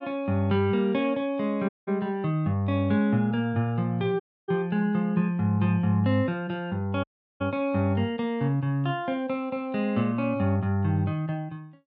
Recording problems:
audio cutting out; at 1.5 s, at 4 s and at 7 s

